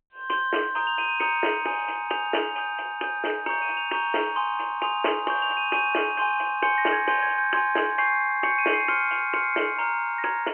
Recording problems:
phone line; 280 Hz to 3.1 kHz, G.711

